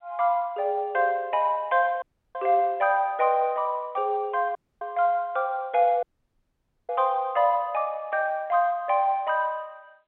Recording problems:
phone line; 260 Hz to 3.5 kHz, G.711
audio cutting out; at 2 s, at 4.5 s and at 6 s for 1 s

